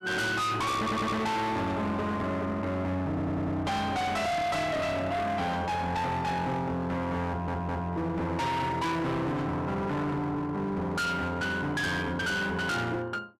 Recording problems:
distorted audio; hard clipping, signal-to-distortion ratio 6 dB
audio stuttering; at 1 s, at 3 s and at 7.5 s

